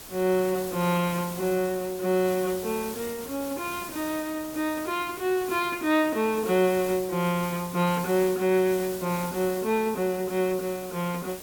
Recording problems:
hiss; slope -3 dB per octave, SNR 12 dB

